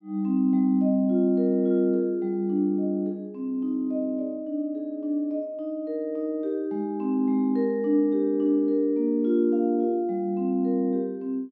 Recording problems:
none

